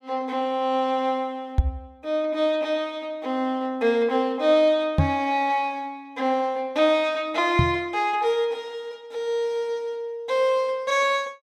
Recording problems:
microphone thump; at 1.5 s, at 5 s and at 7.5 s; peak +8 dB vs average level

